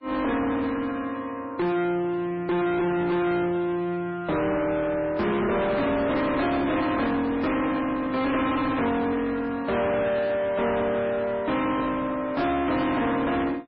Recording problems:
lossy codec; MP3, log-spectral distance 3 dB
distorted audio; soft clipping, signal-to-distortion ratio 5 dB

